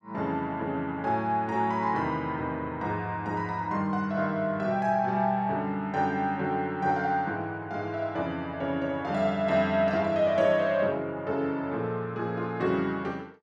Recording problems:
none

